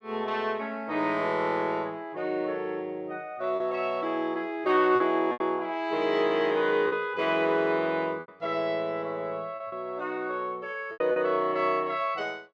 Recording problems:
packet loss; 4% of the sound replaced, filled with repeated pitch periods

